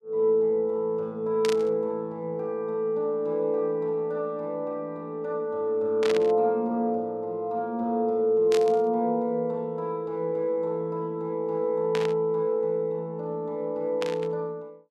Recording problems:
static burst; 5 times, first at 1.5 s; peak -2 dB vs average level

